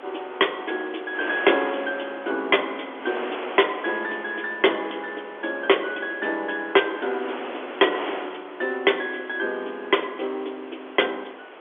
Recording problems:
phone line; 260 Hz to 3.5 kHz, G.711
distorted audio; hard clipping, signal-to-distortion ratio 12 dB
wind noise; below 2 kHz, SNR 12 dB

